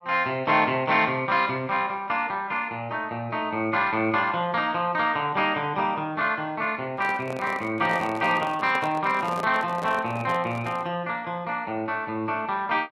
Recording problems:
microphone handling noise; from 7 to 11 s; peak -5 dB vs average level

